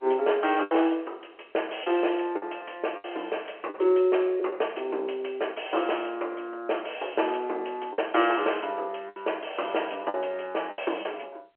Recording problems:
phone line; 280 Hz to 3.2 kHz, G.711
lost packets; 5% of the sound replaced, filled with the last packet

